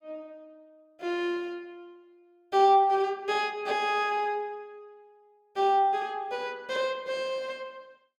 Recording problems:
none

